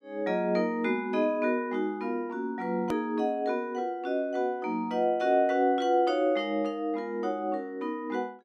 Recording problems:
click at an edit; at 3 s

